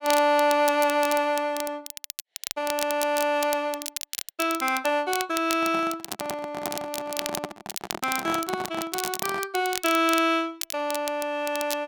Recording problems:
crackling; vinyl, SNR 9 dB
handling noise; from 5.5 to 9.5 s; peak -1 dB vs average level

